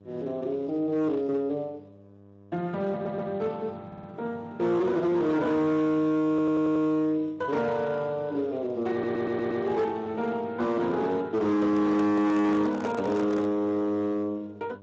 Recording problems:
codec artefacts; Speex, log-spectral distance 2 dB, nothing above 7.6 kHz
distortion; hard clipping, signal-to-distortion ratio 11 dB
hum; 50 Hz, harmonics up to 1.2 kHz, SNR 25 dB
audio stuttering; 4 times, first at 3 s
microphone handling noise; from 11 to 14 s; peak -3 dB vs average level

